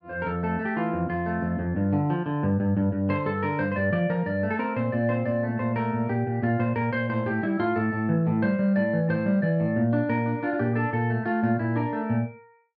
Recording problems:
none

